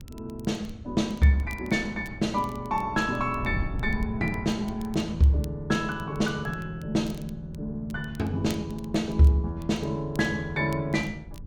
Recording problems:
wind noise; below 120 Hz, SNR 14 dB
crackling; vinyl, SNR 26 dB

